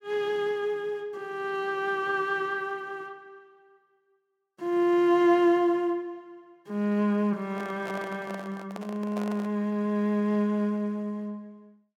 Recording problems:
microphone handling noise; from 7.5 to 9.5 s; peak -7 dB vs average level

